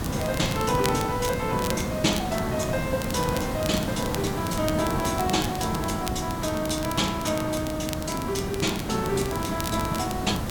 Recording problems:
hiss; slope -6 dB per octave, SNR 3 dB
crackling; vinyl, SNR 11 dB

